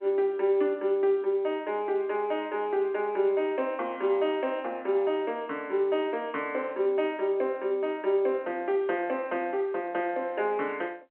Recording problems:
telephone audio; 280 Hz to 3.2 kHz, G.711

